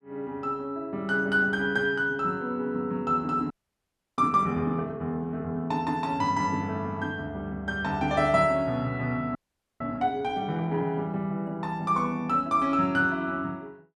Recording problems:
audio freezing; at 3.5 s for 0.5 s and at 9.5 s

